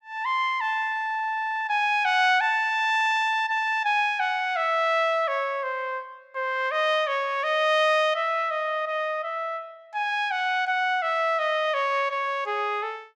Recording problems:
none

